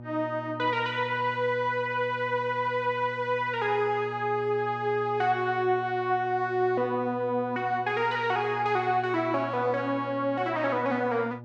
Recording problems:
electrical hum; 60 Hz, harmonics up to 960 Hz, SNR 15 dB

